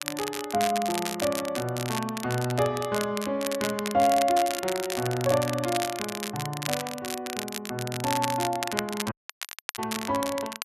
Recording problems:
crackling; vinyl, SNR 6 dB
audio cutting out; at 9 s for 0.5 s

